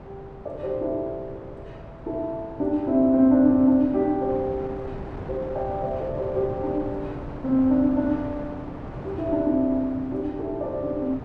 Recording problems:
wind on the microphone; below 600 Hz, SNR 14 dB

